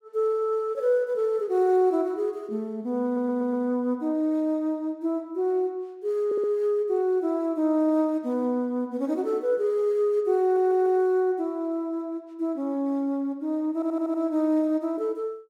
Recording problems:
audio stuttering; 4 times, first at 3 s

